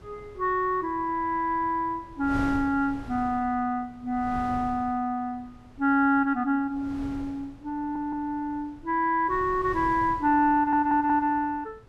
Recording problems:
wind on the microphone; below 370 Hz, SNR 18 dB
stutter; at 8 s and at 11 s

